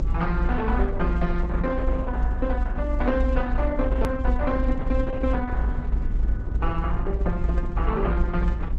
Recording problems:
codec artefacts; Opus, log-spectral distance 2 dB, nothing above 13.1 kHz
rumble; below 58 Hz, SNR -1 dB
edit click; at 4 s

